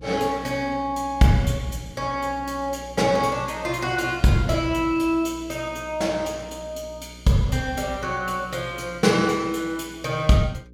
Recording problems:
electrical hum; 60 Hz, harmonics up to 540 Hz, SNR 20 dB

